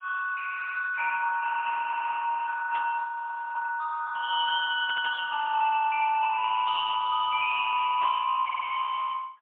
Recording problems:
phone line; 990 Hz to 2.2 kHz, AMR-NB, then MP3
stutter; 4 times, first at 0.5 s
burst of static; at 2.5 s, at 5 s and at 8 s; peak -7 dB vs average level
frozen audio; at 3 s for 0.5 s

